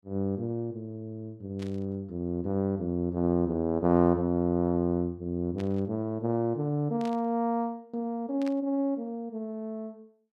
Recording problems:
static burst; 4 times, first at 1.5 s; peak -12 dB vs average level

